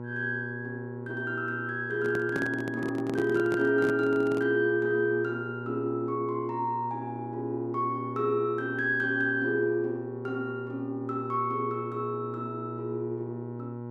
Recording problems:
hum; 60 Hz, harmonics up to 1.1 kHz, SNR 10 dB
handling noise; from 2 to 4.5 s; peak -2 dB vs average level

